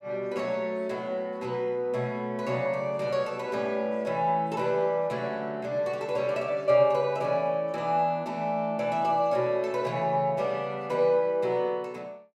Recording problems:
none

